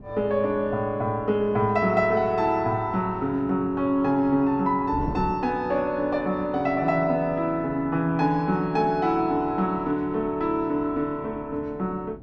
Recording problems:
wind on the microphone; below 300 Hz, SNR 18 dB

